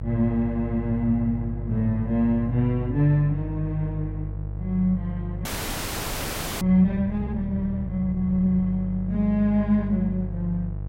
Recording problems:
electrical hum; 50 Hz, harmonics up to 650 Hz, SNR 8 dB
audio freezing; at 5.5 s for 1 s

